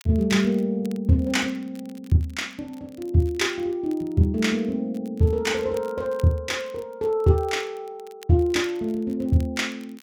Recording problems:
crackle; vinyl, SNR 29 dB

